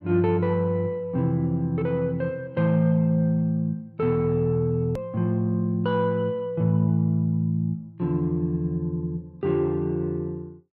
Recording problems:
click at an edit; at 5 s

